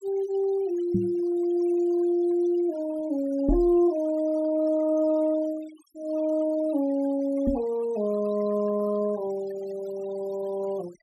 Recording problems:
denoising artefacts; signal-to-artefact ratio 24 dB
microphone bump; at 1 s, at 3.5 s and at 7.5 s; peak +5 dB vs average level

